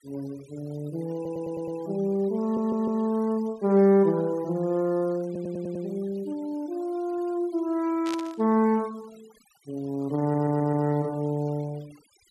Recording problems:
denoising artefacts; signal-to-artefact ratio 25 dB
stutter; 4 times, first at 1 s
burst of static; at 8 s; peak -7 dB vs average level

